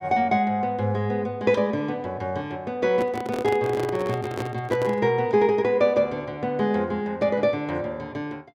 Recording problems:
handling noise; from 3 to 5 s; peak -1 dB vs average level

